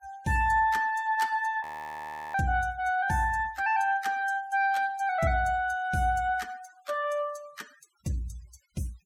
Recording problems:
noise reduction artefacts; signal-to-artefact ratio 25 dB
audio freezing; at 1.5 s for 0.5 s

